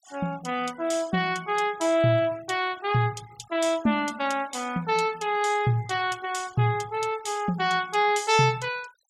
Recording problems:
noise reduction artefacts; signal-to-artefact ratio 23 dB

